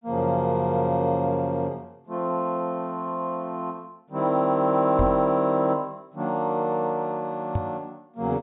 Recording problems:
low-pass filter; nothing above 4 kHz
microphone bump; at 5 s and at 7.5 s; peak +3 dB vs average level

